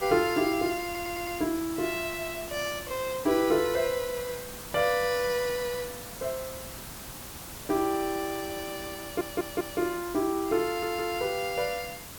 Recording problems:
background hiss; slope -2 dB per octave, SNR 10 dB
audio stuttering; at 1 s, at 9 s and at 11 s

